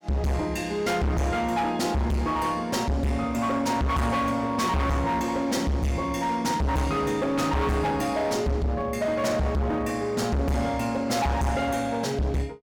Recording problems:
distorted audio; hard clipping, signal-to-distortion ratio 6 dB

